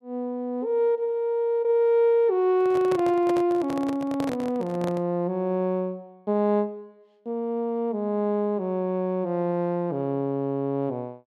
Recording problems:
microphone handling noise; from 2.5 to 5 s; peak -4 dB vs average level

